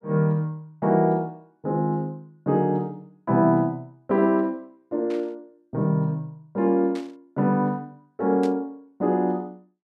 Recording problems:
burst of static; at 5 s, at 7 s and at 8.5 s; peak -13 dB vs average level

